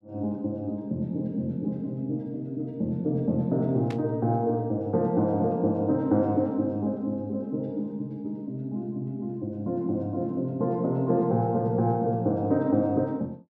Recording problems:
static burst; at 4 s; peak -10 dB vs average level

